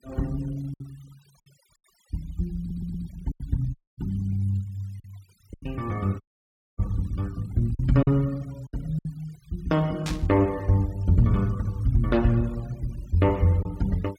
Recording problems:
noise reduction artefacts; signal-to-artefact ratio 26 dB
packet loss; 4% of the sound replaced, filled with silence
audio stuttering; at 2.5 s
dropout; at 4 s and at 6 s for 0.5 s
static burst; at 10 s; peak -3 dB vs average level

